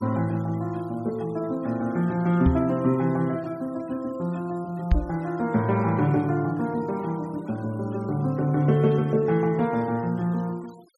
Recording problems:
denoising artefacts; signal-to-artefact ratio 27 dB
knock on the microphone; at 2.5 s and at 5 s; peak +7 dB vs average level

